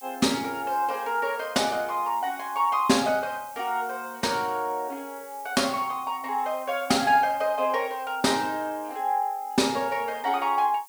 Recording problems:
background hiss; slope +4 dB per octave, SNR 20 dB

